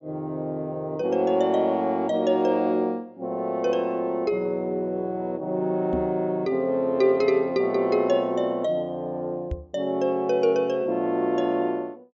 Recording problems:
low-pass filter; nothing above 8 kHz
microphone thump; at 6 s and at 9.5 s; peak -2 dB vs average level

